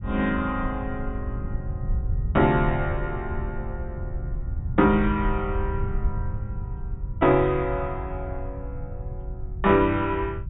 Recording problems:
treble missing; nothing above 4 kHz
low-frequency rumble; below 96 Hz, SNR 8 dB

